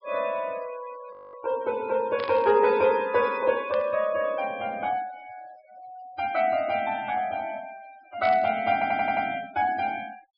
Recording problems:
treble missing; nothing above 5.5 kHz
noise reduction artefacts; signal-to-artefact ratio 22 dB
audio freezing; at 1 s
static burst; at 2 s, at 3.5 s and at 8 s; peak -8 dB vs average level
audio stuttering; at 8.5 s

